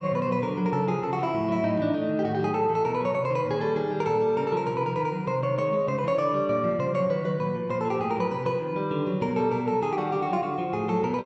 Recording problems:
none

